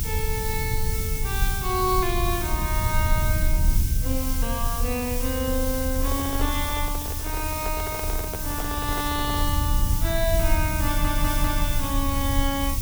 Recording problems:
hum; 60 Hz, harmonics up to 540 Hz, SNR 15 dB
background hiss; SNR 2 dB
rumble; below 80 Hz, strongest tone 30 Hz, SNR 0 dB
handling noise; from 6 to 9.5 s; peak -2 dB vs average level
audio stuttering; at 11 s

